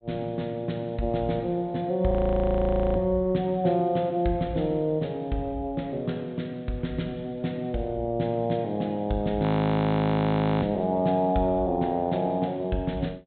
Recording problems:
low-pass filter; nothing above 4 kHz
audio freezing; at 2 s for 1 s and at 9.5 s for 1 s

